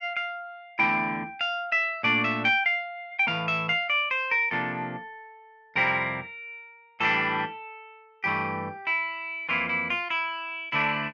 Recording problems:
none

